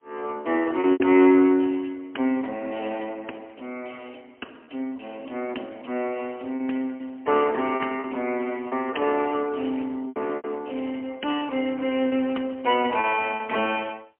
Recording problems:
phone line; 220 Hz to 3.1 kHz, AMR-NB, then MP3
packet loss; 5% of the sound replaced, filled with repeated pitch periods

